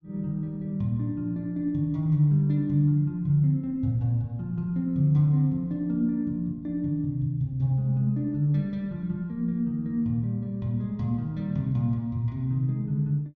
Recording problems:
treble cut off; nothing above 8 kHz

